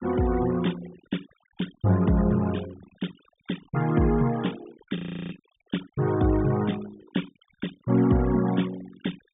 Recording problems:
treble missing; nothing above 3.7 kHz
noise reduction artefacts; signal-to-artefact ratio 18 dB
audio freezing; at 5 s

